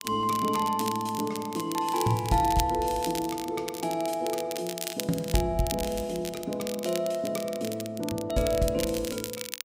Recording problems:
crackle; vinyl, SNR 9 dB

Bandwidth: 15.5 kHz